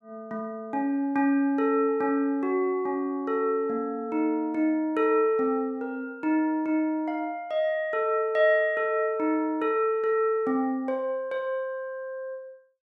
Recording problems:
none

